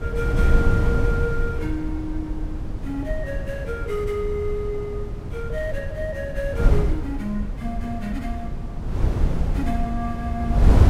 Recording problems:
wind on the microphone; below 110 Hz, SNR -3 dB

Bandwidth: 16 kHz